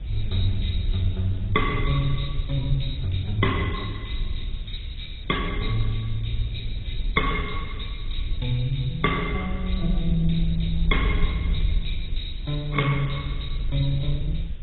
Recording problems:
lossy compression; AAC, then MP2, log-spectral distance 8 dB, nothing above 3.8 kHz
background hiss; SNR 27 dB
wind on the microphone; below 64 Hz, SNR 4 dB

